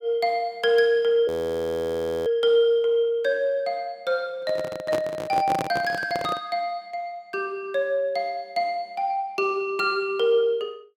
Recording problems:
audio freezing; at 1.5 s for 1 s
handling noise; from 4.5 to 6.5 s; peak 0 dB vs average level

